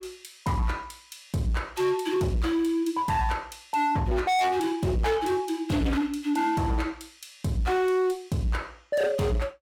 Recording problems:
distorted audio; hard clipping, signal-to-distortion ratio 6 dB

